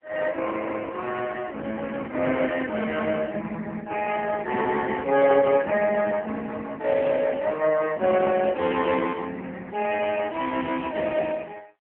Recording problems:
phone line; 280 Hz to 3.1 kHz, AMR-NB

